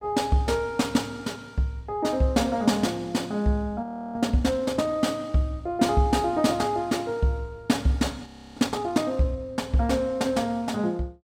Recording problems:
audio freezing; at 4 s and at 8.5 s

